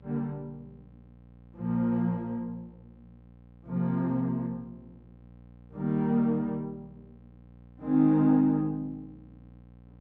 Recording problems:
electrical hum; 60 Hz, harmonics up to 1 kHz, SNR 25 dB

